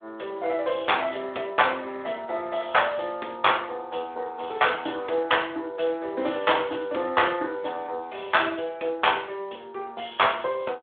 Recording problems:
phone line; 320 Hz to 3.6 kHz, Speex

